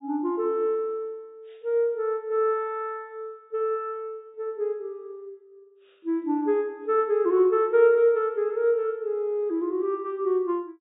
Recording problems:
treble missing; nothing above 4 kHz

